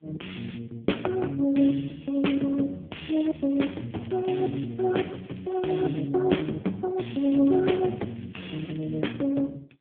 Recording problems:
phone line; 190 Hz to 3.4 kHz, AMR-NB
crackle; from 3 to 6 s and from 7 to 9 s; loose cable, SNR 26 dB

